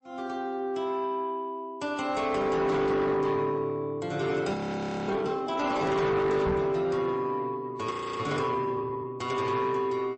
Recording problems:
lossy compression; MP3, then MP3, log-spectral distance 2 dB, nothing above 8.2 kHz
distorted audio; soft clipping, signal-to-distortion ratio 10 dB
audio freezing; at 4.5 s for 0.5 s and at 8 s
microphone bump; at 6.5 s; peak +1 dB vs average level

